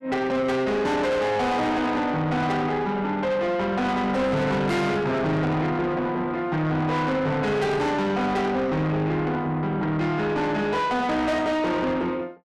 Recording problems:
distorted audio; soft clipping, signal-to-distortion ratio 7 dB

